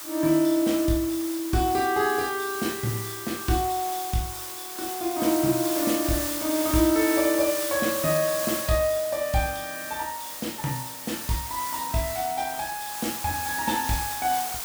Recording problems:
background hiss; slope 0 dB per octave, SNR 5 dB

